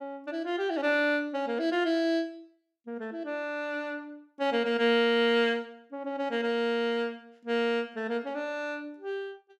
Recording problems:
none

